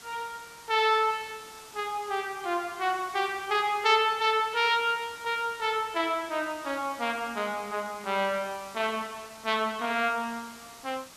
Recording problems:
hiss; slope -1 dB per octave, SNR 19 dB

